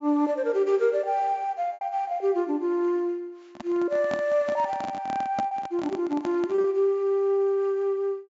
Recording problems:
treble missing; nothing above 7.4 kHz
lost packets; 2% of the sound replaced, filled with repeated pitch periods
microphone handling noise; from 3.5 to 6.5 s; peak -2 dB vs average level

